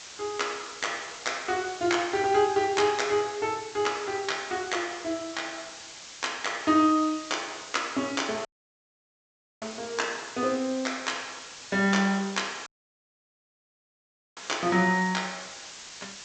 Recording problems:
treble cut off; nothing above 8 kHz
background hiss; slope +2 dB per octave, SNR 14 dB
dropout; at 8.5 s for 1 s and at 13 s for 1.5 s

